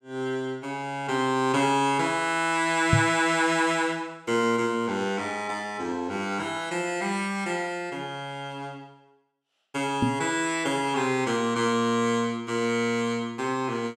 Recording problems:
microphone thump; at 3 s and at 10 s; peak +7 dB vs average level

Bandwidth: 16.5 kHz